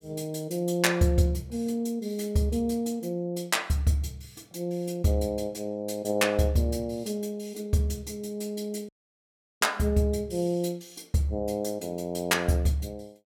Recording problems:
audio cutting out; at 9 s for 0.5 s

